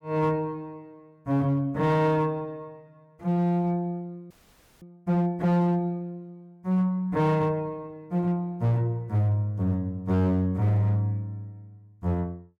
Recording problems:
distortion; hard clipping, signal-to-distortion ratio 11 dB
frozen audio; at 4.5 s for 0.5 s

